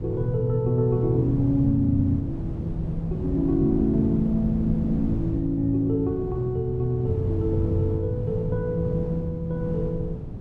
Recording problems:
wind on the microphone; below 200 Hz, SNR 7 dB

